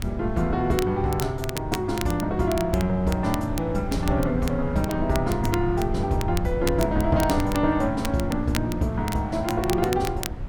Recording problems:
low-frequency rumble; below 88 Hz, SNR 11 dB
wind on the microphone; below 210 Hz, SNR 12 dB
crackle; vinyl, SNR 13 dB

